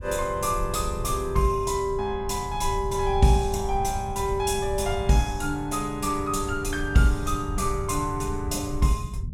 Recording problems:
rumble; below 98 Hz, SNR 9 dB

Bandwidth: 16 kHz